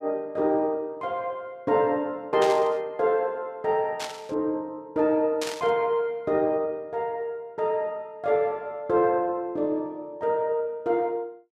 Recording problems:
burst of static; at 2.5 s, at 4 s and at 5.5 s; peak -2 dB vs average level

